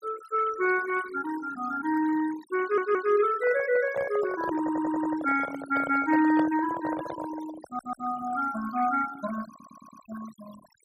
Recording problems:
noise reduction artefacts; signal-to-artefact ratio 16 dB
stutter; 4 times, first at 2.5 s
handling noise; from 3.5 to 8 s; peak -2 dB vs average level

